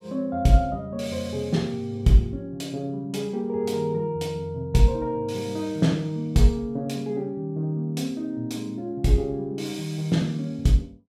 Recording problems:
none

